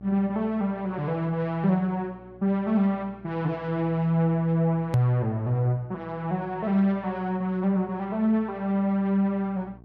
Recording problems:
electrical hum; 60 Hz, harmonics up to 840 Hz, SNR 25 dB
edit click; at 5 s

